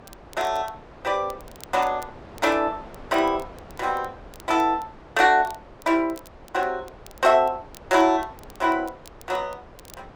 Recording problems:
wind noise; below 900 Hz, SNR 21 dB
crackle; vinyl, SNR 27 dB

